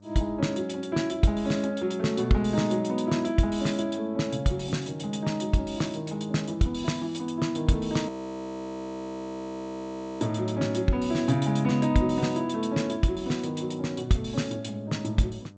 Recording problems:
lossy compression; G.722, log-spectral distance 3 dB, nothing above 8 kHz
hum; 50 Hz, harmonics up to 1.2 kHz, SNR 25 dB
audio freezing; at 8 s for 2 s

